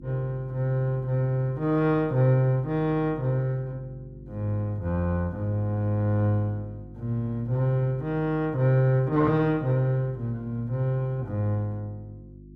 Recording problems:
electrical hum; 50 Hz, harmonics up to 350 Hz, SNR 19 dB

